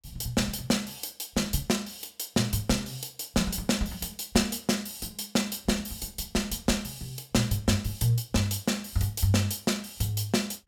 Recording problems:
none

